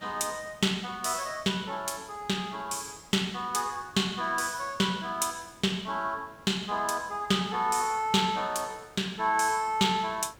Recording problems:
background hiss; slope -5 dB per octave, SNR 26 dB

